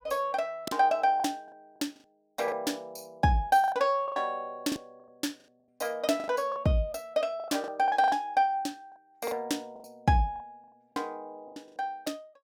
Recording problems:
lost packets; 10% of the sound replaced, filled with the last packet

